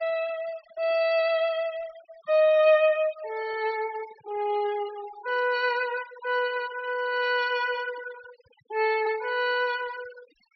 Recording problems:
treble missing; nothing above 5.5 kHz
noise reduction artefacts; signal-to-artefact ratio 19 dB

